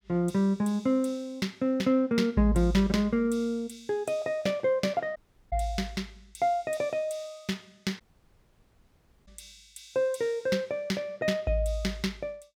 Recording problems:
audio cutting out; at 5 s and at 8 s for 1.5 s

